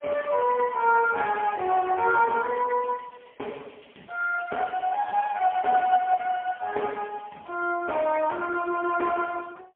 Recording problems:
telephone audio; 280 Hz to 2.9 kHz, AMR-NB, then MP3

